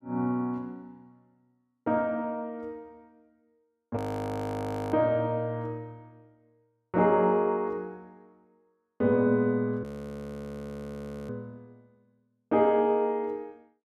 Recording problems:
audio freezing; at 4 s for 1 s and at 10 s for 1.5 s

